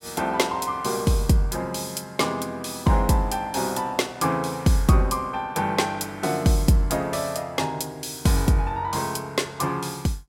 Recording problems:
none

